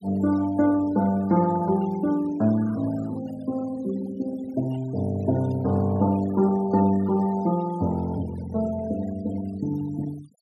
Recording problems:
noise reduction artefacts; signal-to-artefact ratio 21 dB

